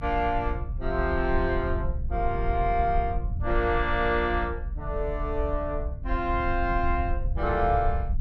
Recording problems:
rumble; below 66 Hz, SNR 4 dB

